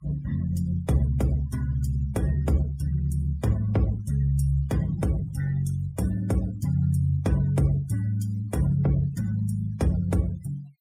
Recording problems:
noise reduction artefacts; signal-to-artefact ratio 22 dB

